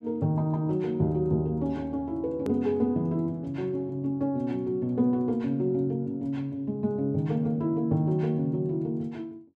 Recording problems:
hard cut with a click; at 2.5 s

